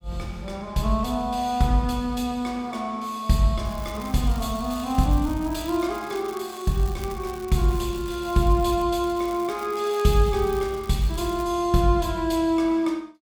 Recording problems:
crackle; from 3.5 to 9 s and from 9 to 11 s; loose cable, SNR 20 dB

